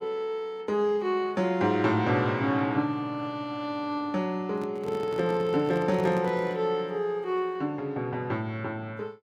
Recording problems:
handling noise; from 4.5 to 6.5 s; peak -5 dB vs average level

